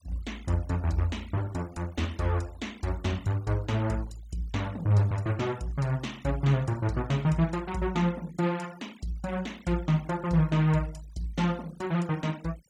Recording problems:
denoising artefacts; signal-to-artefact ratio 23 dB

